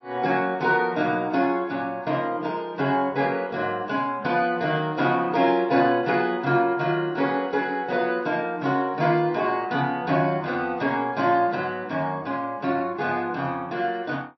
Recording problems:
codec artefacts; MP3, log-spectral distance 2 dB, nothing above 5 kHz

